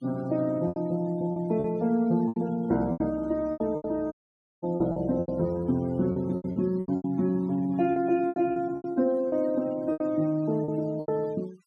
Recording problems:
noise reduction artefacts; signal-to-artefact ratio 25 dB
packet loss; 14% of the sound replaced, filled with repeated pitch periods
audio cutting out; at 4 s for 0.5 s

